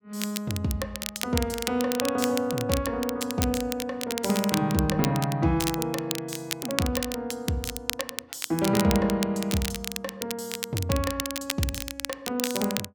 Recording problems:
crackle; vinyl, SNR 5 dB

